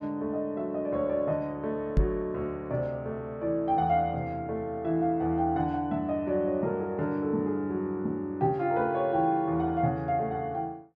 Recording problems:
knock on the microphone; at 2 s; peak +7 dB vs average level

